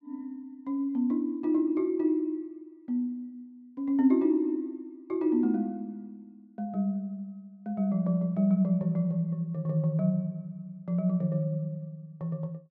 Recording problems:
none

